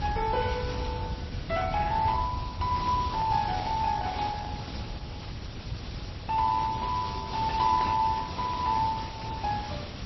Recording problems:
lossy compression; Opus, then MP3, log-spectral distance 6 dB, nothing above 5.2 kHz
background hiss; SNR 12 dB
low-frequency rumble; below 130 Hz, SNR 8 dB
handling noise; from 3 to 5 s; peak -10 dB vs average level

